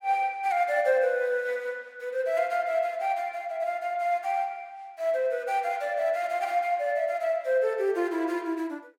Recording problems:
none

